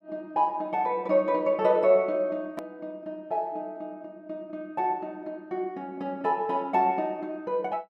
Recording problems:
click at an edit; at 2.5 s

